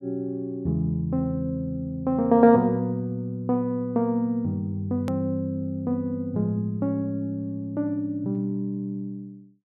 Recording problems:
click at an edit; at 5 s

